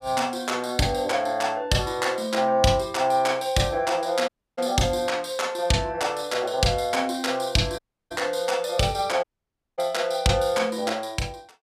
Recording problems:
audio cutting out; at 4.5 s, at 8 s and at 9 s for 0.5 s

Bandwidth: 15.5 kHz